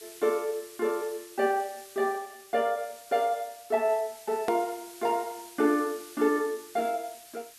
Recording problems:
background hiss; SNR 18 dB
edit click; at 4.5 s

